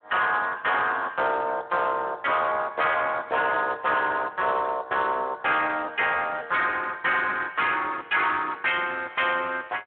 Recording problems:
telephone audio; 320 Hz to 3.5 kHz, Speex
distorted audio; soft clipping, signal-to-distortion ratio 10 dB

